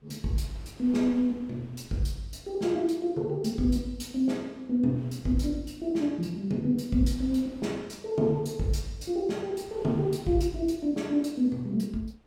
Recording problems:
wind on the microphone; below 870 Hz, SNR 25 dB

